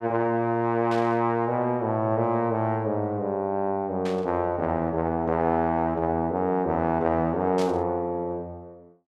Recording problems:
static burst; at 1 s, at 4 s and at 7.5 s; peak -9 dB vs average level

